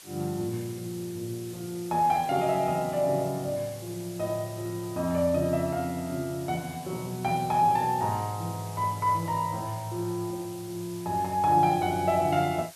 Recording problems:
hiss; slope +2 dB per octave, SNR 17 dB

